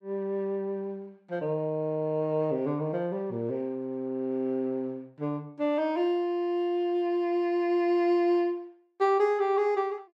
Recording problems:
none

